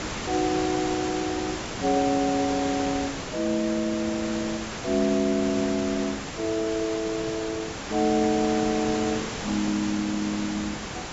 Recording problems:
treble cut off; nothing above 8 kHz
background hiss; slope -4 dB per octave, SNR 6 dB

